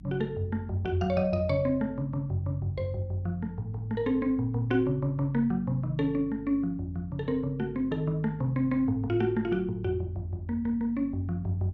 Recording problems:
hum; 50 Hz, harmonics up to 300 Hz, SNR 18 dB

